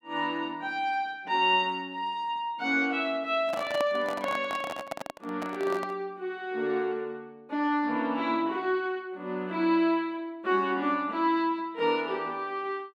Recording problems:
handling noise; from 3.5 to 6 s; peak 0 dB vs average level

